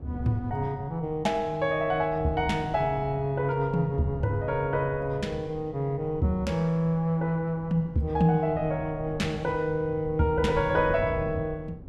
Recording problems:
wind on the microphone; below 190 Hz, SNR 13 dB

